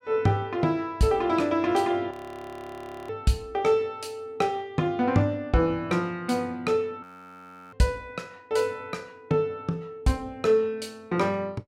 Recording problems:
frozen audio; at 2 s for 1 s and at 7 s for 0.5 s

